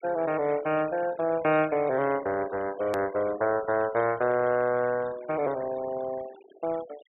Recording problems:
treble cut off; nothing above 4 kHz
denoising artefacts; signal-to-artefact ratio 20 dB
edit click; at 3 s

